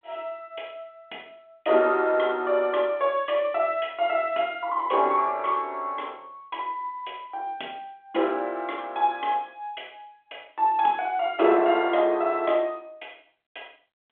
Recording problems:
phone line; 280 Hz to 3.6 kHz, G.726

